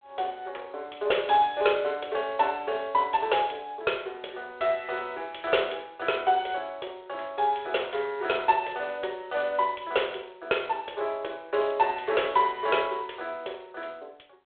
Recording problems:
phone line; 340 Hz to 3.5 kHz, G.726

